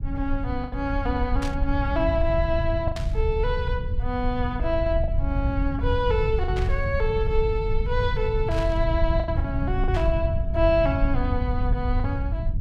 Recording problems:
rumble; below 88 Hz, SNR 1 dB
packet loss; 4% of the sound replaced, filled with the last packet
burst of static; 5 times, first at 1.5 s; peak -5 dB vs average level

